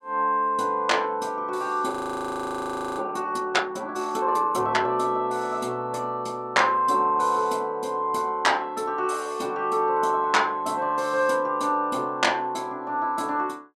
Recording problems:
audio freezing; at 2 s for 1 s

